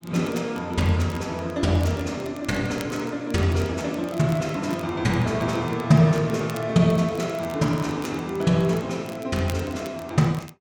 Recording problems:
crackle; vinyl, SNR 23 dB

